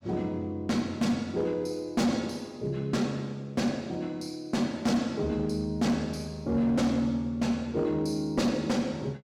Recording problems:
distorted audio; hard clipping, uneven, signal-to-distortion ratio 10 dB

